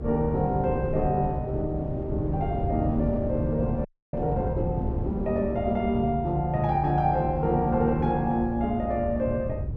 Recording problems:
low-frequency rumble; below 110 Hz, SNR 8 dB
wind on the microphone; below 400 Hz, SNR 10 dB
audio freezing; at 4 s

